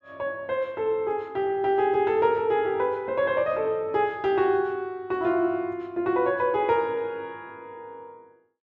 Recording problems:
none

